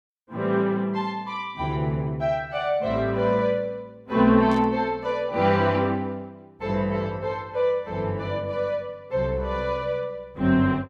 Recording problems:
static burst; at 4.5 s; peak -14 dB vs average level

